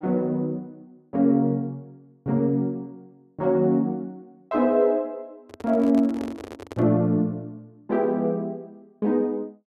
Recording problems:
handling noise; from 5.5 to 7 s; peak -8 dB vs average level

